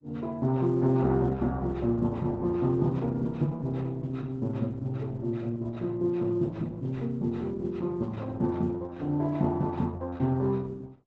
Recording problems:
lossy compression; Opus, log-spectral distance 2 dB, nothing above 7.6 kHz

